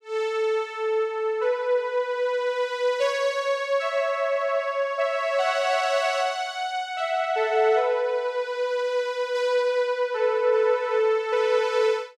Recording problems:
none

